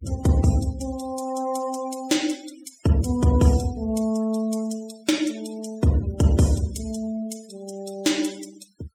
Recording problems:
denoising artefacts; signal-to-artefact ratio 17 dB

